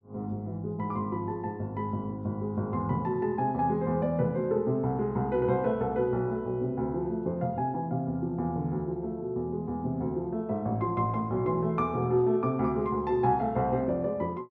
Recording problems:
none

